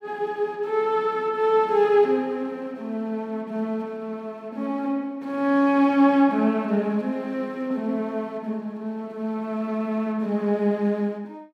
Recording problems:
none

